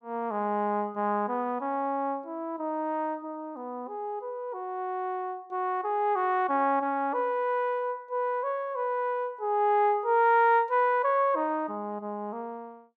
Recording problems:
none

